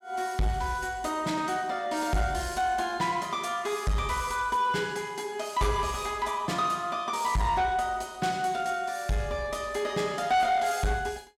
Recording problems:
distortion; soft clipping, signal-to-distortion ratio 11 dB

